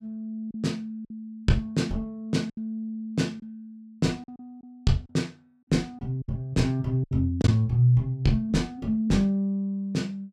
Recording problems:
lost packets; 5% of the sound replaced, filled with silence

